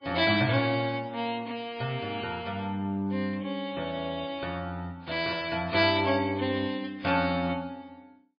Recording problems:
lossy codec; MP3, log-spectral distance 3 dB, nothing above 4.6 kHz

